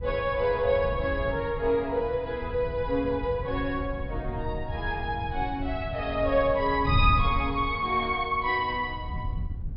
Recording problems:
low-pass filter; nothing above 5.5 kHz
wind on the microphone; below 110 Hz, SNR 8 dB

